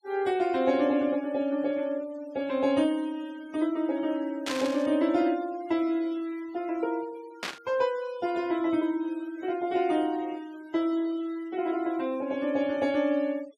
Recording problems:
denoising artefacts; signal-to-artefact ratio 22 dB
burst of static; at 4.5 s and at 7.5 s; peak -1 dB vs average level

